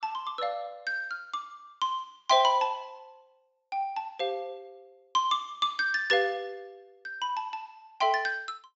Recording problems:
treble cut off; nothing above 8 kHz

